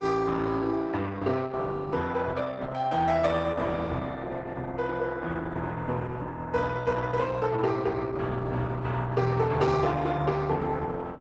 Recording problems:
codec artefacts; Opus, log-spectral distance 3 dB, nothing above 7.8 kHz

